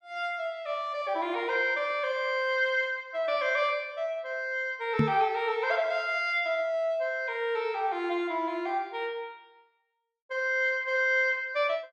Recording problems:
microphone bump; at 5 s; peak +7 dB vs average level

